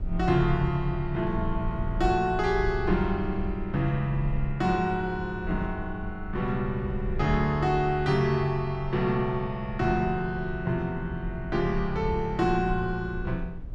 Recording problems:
rumble; below 70 Hz, SNR 10 dB

